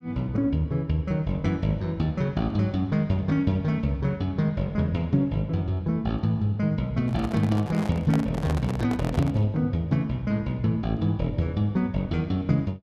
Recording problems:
microphone handling noise; from 7 to 9.5 s; peak -2 dB vs average level

